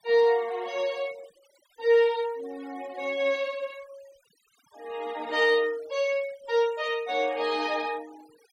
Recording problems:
denoising artefacts; signal-to-artefact ratio 24 dB

